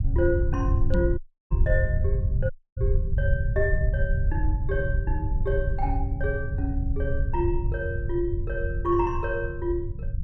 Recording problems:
rumble; below 92 Hz, SNR -2 dB
microphone bump; at 1 s; peak +8 dB vs average level
audio cutting out; at 1 s and at 2.5 s

